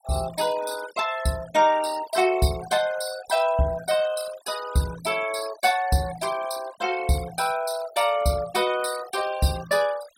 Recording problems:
denoising artefacts; signal-to-artefact ratio 15 dB

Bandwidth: 16.5 kHz